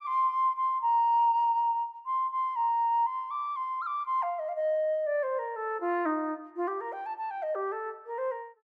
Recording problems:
none

